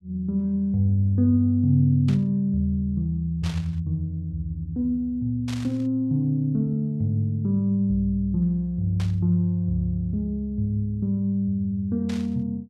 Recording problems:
burst of static; 5 times, first at 2 s; peak -9 dB vs average level

